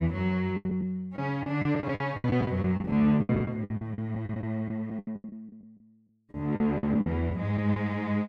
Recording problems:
packet loss; 17% of the sound replaced, filled with the last packet

